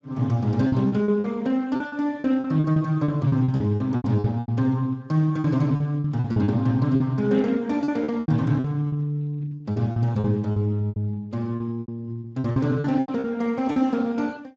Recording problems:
lossy codec; Speex, log-spectral distance 2 dB, nothing above 16.5 kHz
lost packets; 14% of the sound replaced, filled with repeated pitch periods

